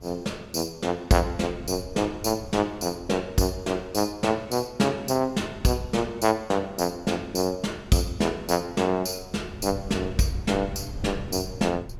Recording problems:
wind on the microphone; below 130 Hz, SNR 16 dB

